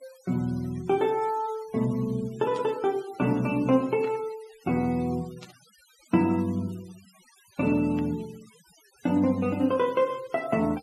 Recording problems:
denoising artefacts; signal-to-artefact ratio 24 dB
static burst; 4 times, first at 2.5 s; peak -15 dB vs average level

